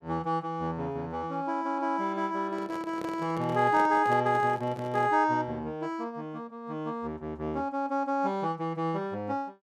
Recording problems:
handling noise; from 2.5 to 5 s; peak -5 dB vs average level

